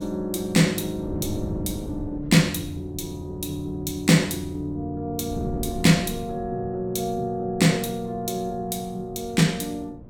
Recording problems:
wind noise; below 240 Hz, SNR 14 dB

